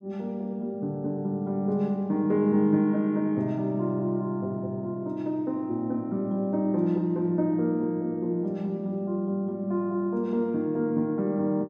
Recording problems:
none

